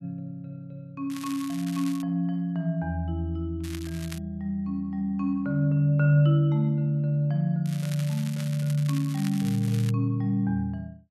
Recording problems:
crackle; at 1 s, at 3.5 s and from 7.5 to 10 s; loose cable, SNR 17 dB

